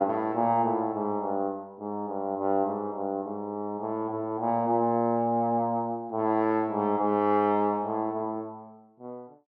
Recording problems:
none

